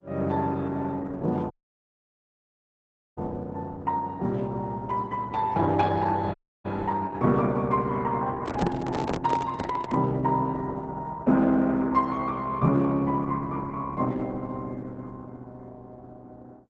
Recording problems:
lossy compression; Opus, log-spectral distance 3 dB
audio cutting out; at 1.5 s for 1.5 s and at 6.5 s
microphone handling noise; from 8.5 to 10 s; peak +1 dB vs average level

